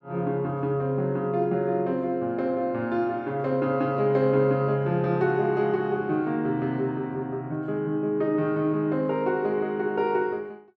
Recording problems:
none

